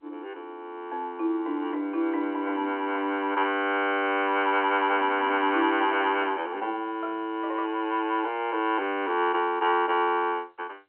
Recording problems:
phone line; 280 Hz to 3.2 kHz, G.711

